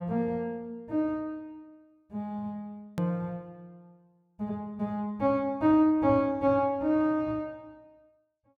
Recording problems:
click at an edit; at 3 s

